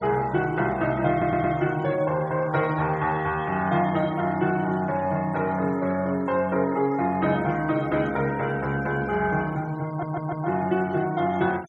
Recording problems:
noise reduction artefacts; signal-to-artefact ratio 22 dB
stutter; at 1 s and at 10 s

